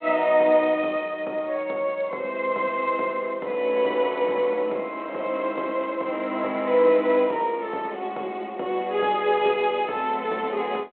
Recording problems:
telephone audio; 300 Hz to 3.5 kHz, G.726

